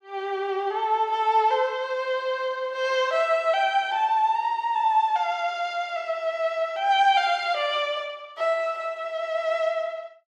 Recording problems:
none

